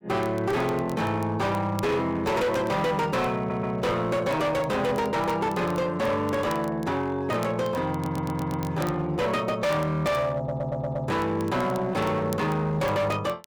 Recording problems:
distortion; hard clipping, signal-to-distortion ratio 8 dB
crackling; vinyl, SNR 23 dB
audio stuttering; at 3.5 s, at 8 s and at 10 s

